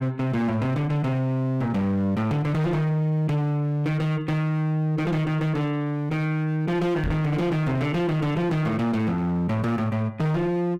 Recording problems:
distortion; hard clipping, uneven, signal-to-distortion ratio 7 dB
microphone bump; at 7 s; peak +1 dB vs average level

